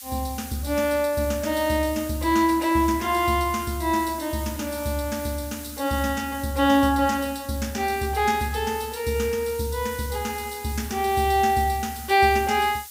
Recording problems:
background hiss; slope +5 dB per octave, SNR 14 dB

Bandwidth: 15.5 kHz